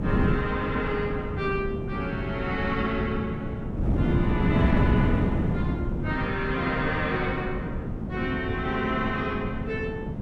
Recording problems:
wind on the microphone; below 250 Hz, SNR -1 dB

